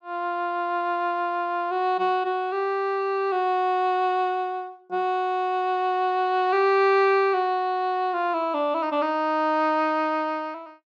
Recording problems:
none

